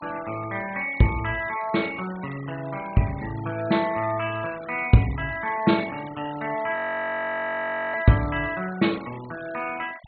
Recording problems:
treble missing; nothing above 4.2 kHz
denoising artefacts; signal-to-artefact ratio 18 dB
audio freezing; at 7 s for 1 s

